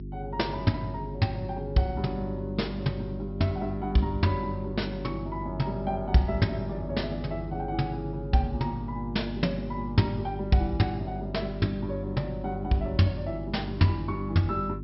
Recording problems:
treble missing; nothing above 5.5 kHz
hum; 50 Hz, harmonics up to 400 Hz, SNR 8 dB

